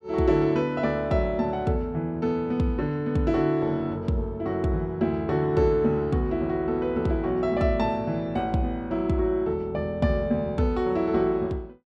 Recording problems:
none

